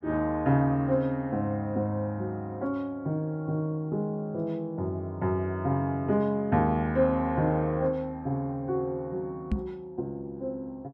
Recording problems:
microphone bump; at 9.5 s; peak +4 dB vs average level

